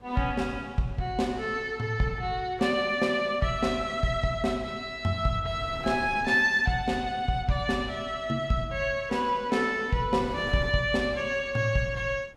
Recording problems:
wind noise; below 550 Hz, SNR 21 dB

